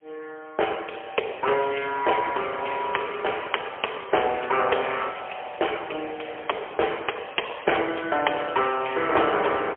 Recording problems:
telephone audio; 340 Hz to 3.3 kHz, AMR-NB, then MP3

